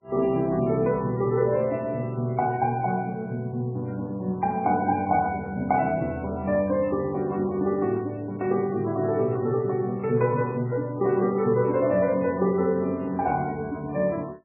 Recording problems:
codec artefacts; MP3, log-spectral distance 2 dB, nothing above 2.2 kHz

